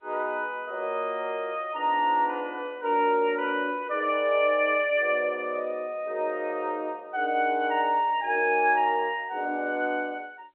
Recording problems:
telephone audio; 260 Hz to 3.1 kHz, G.711

